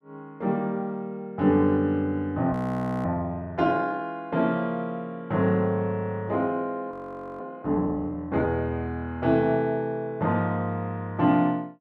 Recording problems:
audio freezing; at 2.5 s for 0.5 s and at 7 s

